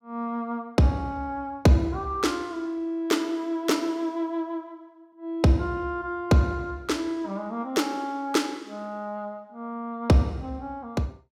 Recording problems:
none

